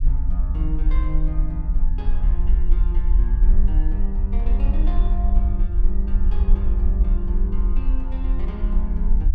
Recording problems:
low-frequency rumble; below 48 Hz, SNR -11 dB

